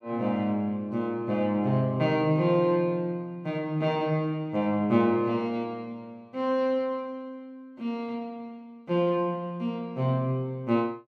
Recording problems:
none

